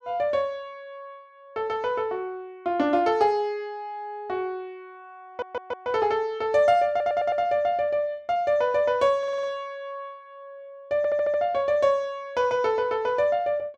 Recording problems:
stutter; 4 times, first at 5.5 s

